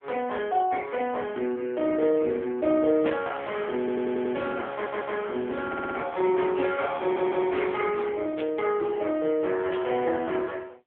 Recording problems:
phone line; 260 Hz to 3.4 kHz, AMR-NB
static burst; at 3 s, at 8.5 s and at 9.5 s; peak -6 dB vs average level
audio stuttering; 4 times, first at 4 s

